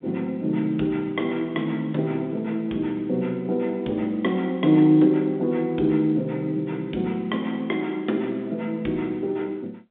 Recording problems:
telephone audio; 190 Hz to 3.8 kHz, G.711

